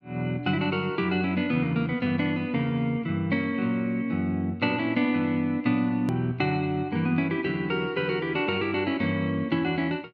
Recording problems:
edit click; at 6 s

